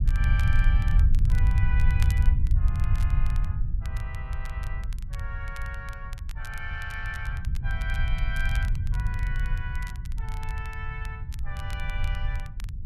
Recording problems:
low-frequency rumble; below 80 Hz, SNR -10 dB
crackle; vinyl, SNR 12 dB

